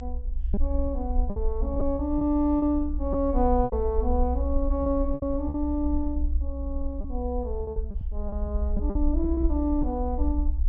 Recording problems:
treble missing; nothing above 7.9 kHz
rumble; below 62 Hz, SNR 2 dB
lost packets; 8% of the sound replaced, filled with repeated pitch periods

